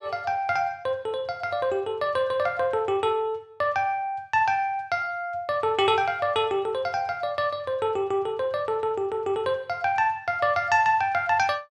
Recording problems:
none

